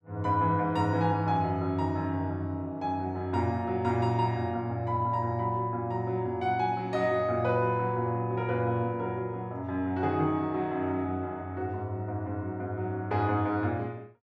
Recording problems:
none

